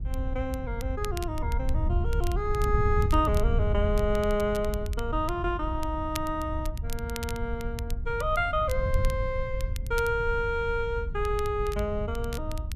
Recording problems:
wind on the microphone; below 86 Hz, SNR 2 dB
crackling; vinyl, SNR 16 dB

